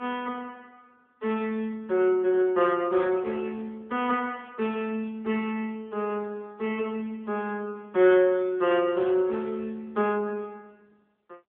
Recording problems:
telephone audio; 260 Hz to 3.5 kHz, AMR-NB

